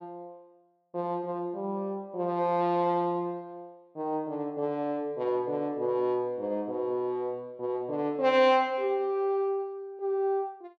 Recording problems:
none

